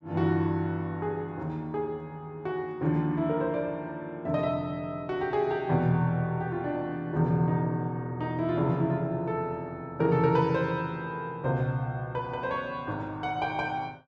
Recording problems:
none

